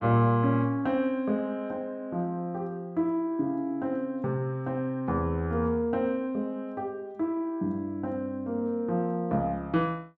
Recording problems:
none

